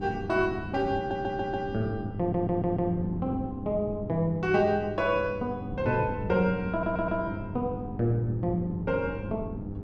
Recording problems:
electrical hum; 50 Hz, harmonics up to 900 Hz, SNR 11 dB
wind noise; below 240 Hz, SNR 11 dB
audio stuttering; at 1 s, at 2 s and at 6.5 s

